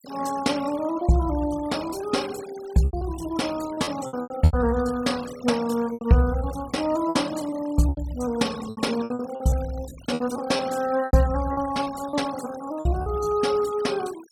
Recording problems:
noise reduction artefacts; signal-to-artefact ratio 17 dB
packet loss; 9% of the sound replaced, filled with repeated pitch periods

